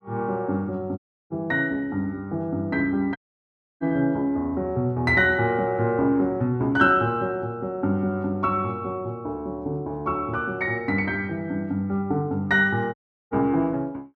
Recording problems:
dropout; at 1 s, at 3 s for 0.5 s and at 13 s

